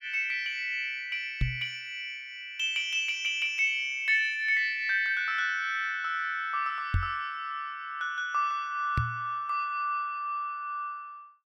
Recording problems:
knock on the microphone; at 1.5 s, at 7 s and at 9 s; peak +4 dB vs average level

